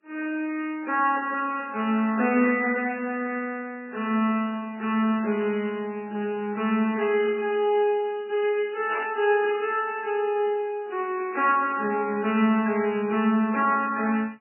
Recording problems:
lossy compression; MP3, log-spectral distance 3 dB, nothing above 2.4 kHz
burst of static; at 2.5 s, at 7 s and at 9 s; peak -5 dB vs average level

